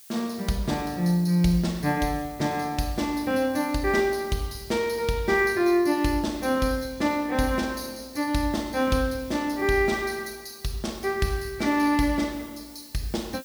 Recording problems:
background hiss; slope +3 dB per octave, SNR 22 dB

